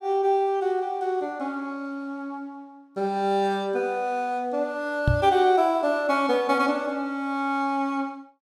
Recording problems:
microphone thump; at 5 s; peak +6 dB vs average level

